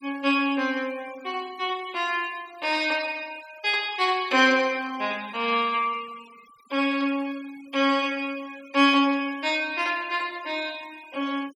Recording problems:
noise reduction artefacts; signal-to-artefact ratio 22 dB

